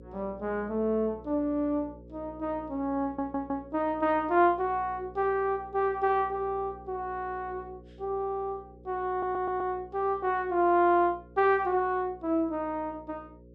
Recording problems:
hum; 60 Hz, harmonics up to 540 Hz, SNR 21 dB
audio stuttering; at 3 s and at 9 s

